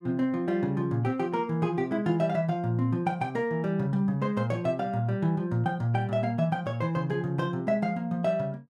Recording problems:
none

